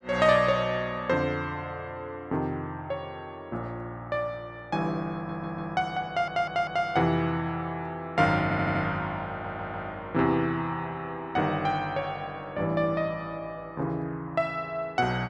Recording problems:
stutter; 4 times, first at 5 s

